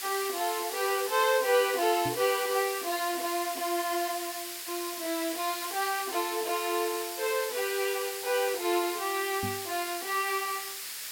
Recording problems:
hiss; slope +4 dB per octave, SNR 6 dB
microphone bump; at 2 s and at 9.5 s; peak -3 dB vs average level

